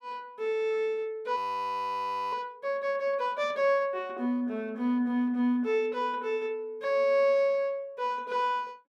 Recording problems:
audio freezing; at 1.5 s for 1 s

